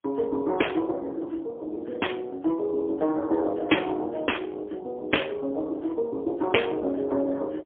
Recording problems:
telephone audio; 240 Hz to 3.4 kHz, AMR-NB, then MP3

